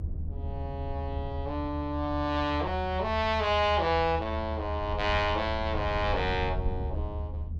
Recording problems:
low-frequency rumble; below 80 Hz, strongest tone 78 Hz, SNR 6 dB

